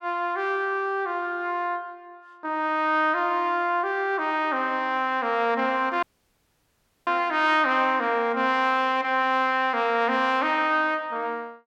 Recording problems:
dropout; at 6 s for 1 s

